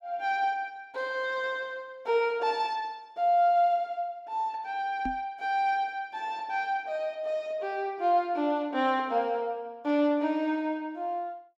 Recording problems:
microphone bump; at 5 s; peak -3 dB vs average level

